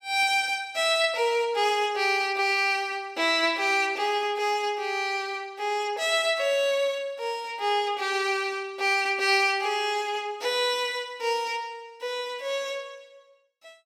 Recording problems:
none

